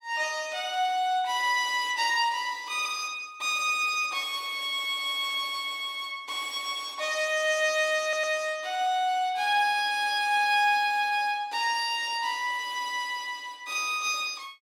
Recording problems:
audio stuttering; at 8 s

